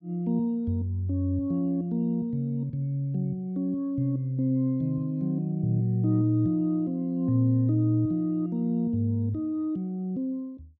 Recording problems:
none

